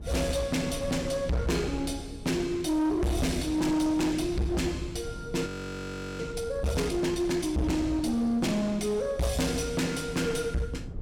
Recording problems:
distorted audio; hard clipping, uneven, signal-to-distortion ratio 6 dB
wind on the microphone; below 170 Hz, SNR 14 dB
frozen audio; at 5.5 s for 0.5 s

